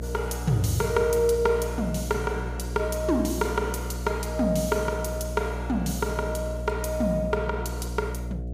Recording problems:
hum; 60 Hz, harmonics up to 720 Hz, SNR 6 dB

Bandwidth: 15.5 kHz